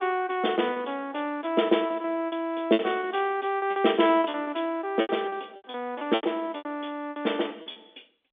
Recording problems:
telephone audio; 240 Hz to 3.6 kHz, G.711
lost packets; 15% of the sound replaced, filled with repeated pitch periods

